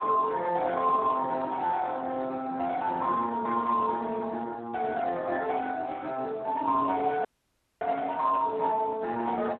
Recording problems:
phone line; 240 Hz to 2.8 kHz, Speex
audio cutting out; at 7.5 s for 0.5 s

